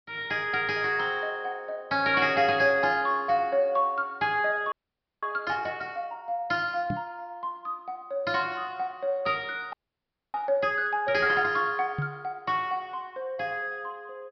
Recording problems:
treble cut off; nothing above 5.5 kHz
audio freezing; at 4.5 s for 0.5 s and at 9.5 s for 0.5 s
microphone bump; at 7 s and at 12 s; peak 0 dB vs average level

